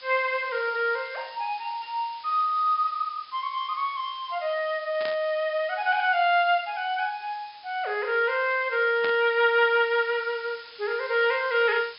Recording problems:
low-pass filter; nothing above 5.5 kHz
hiss; SNR 21 dB
static burst; at 5 s and at 9 s; peak -5 dB vs average level

